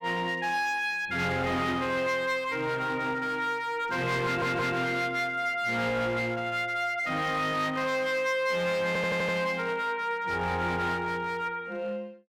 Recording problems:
distortion; hard clipping, uneven, signal-to-distortion ratio 10 dB
audio stuttering; at 4.5 s and at 9 s

